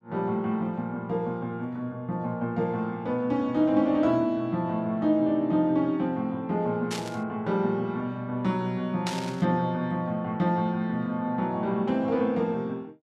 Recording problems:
static burst; at 7 s and at 9 s; peak -2 dB vs average level

